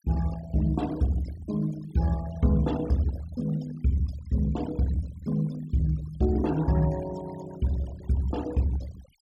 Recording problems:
denoising artefacts; signal-to-artefact ratio 19 dB

